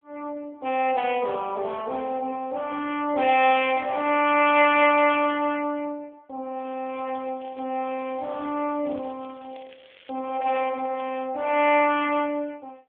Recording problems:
phone line; 320 Hz to 3.4 kHz, AMR-NB
crackling; at 4.5 s and from 6.5 to 11 s; loose cable, SNR 27 dB

